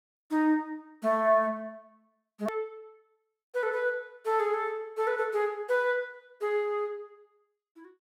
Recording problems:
edit click; at 2.5 s

